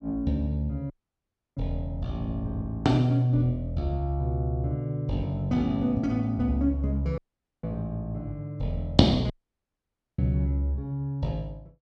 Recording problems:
dropout; at 1 s for 0.5 s, at 7 s and at 9.5 s for 1 s

